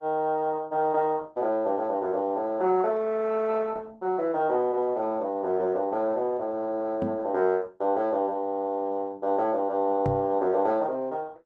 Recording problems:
codec artefacts; Opus, log-spectral distance 2 dB
microphone bump; at 7 s and at 10 s; peak 0 dB vs average level

